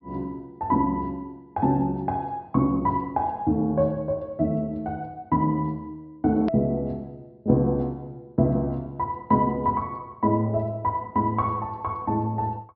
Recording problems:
treble cut off; nothing above 5.5 kHz
edit click; at 6.5 s

